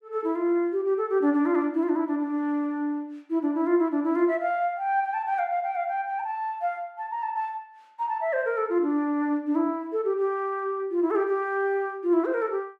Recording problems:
none

